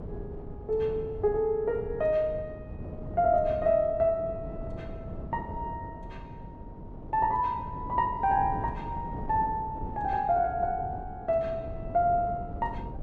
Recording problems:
wind on the microphone; below 270 Hz, SNR 12 dB

